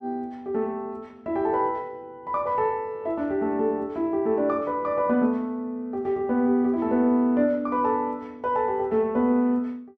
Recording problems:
none

